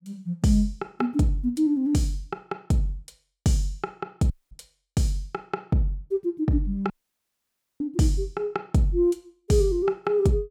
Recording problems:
dropout; at 4.5 s and at 7 s for 1 s

